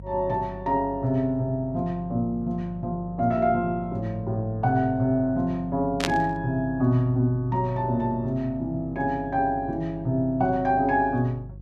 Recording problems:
mains hum; 50 Hz, harmonics up to 400 Hz, SNR 16 dB
burst of static; at 6 s; peak +4 dB vs average level

